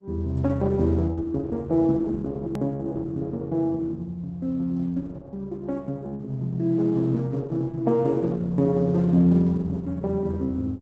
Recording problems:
lossy codec; Opus, log-spectral distance 2 dB, nothing above 13.1 kHz
click at an edit; at 2.5 s

